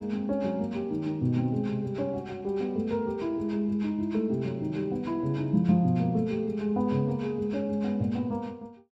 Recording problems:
none

